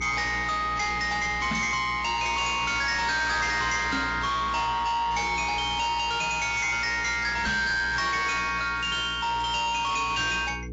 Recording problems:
lossy codec; AAC, log-spectral distance 5 dB
distortion; soft clipping, signal-to-distortion ratio 8 dB
hum; 60 Hz, harmonics up to 2 kHz, SNR 14 dB
microphone bump; at 1.5 s, at 4 s and at 7.5 s; peak +1 dB vs average level

